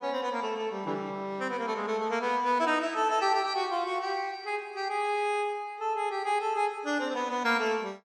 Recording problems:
none

